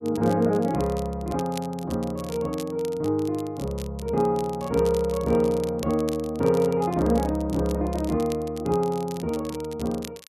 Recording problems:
crackle; vinyl, SNR 19 dB

